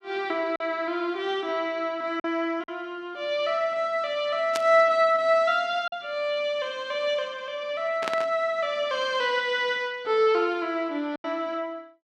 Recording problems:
packet loss; 2% of the sound replaced, filled with silence
burst of static; at 4.5 s and at 8 s; peak 0 dB vs average level

